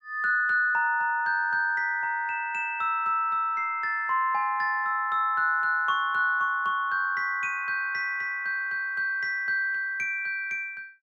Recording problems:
none

